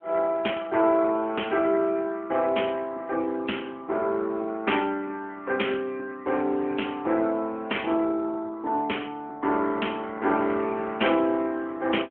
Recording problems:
telephone audio; 240 Hz to 3.3 kHz, AMR-NB

